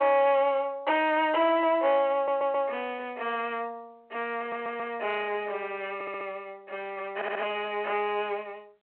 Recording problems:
phone line; 340 Hz to 3.2 kHz, G.726
distortion; hard clipping, signal-to-distortion ratio 10 dB
stutter; 4 times, first at 2 s

